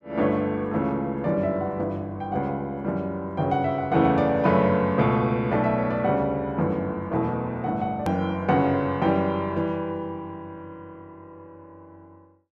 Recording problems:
edit click; at 8 s

